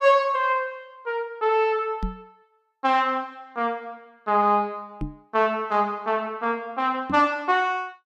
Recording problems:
knock on the microphone; at 2 s, at 5 s and at 7 s; peak -2 dB vs average level

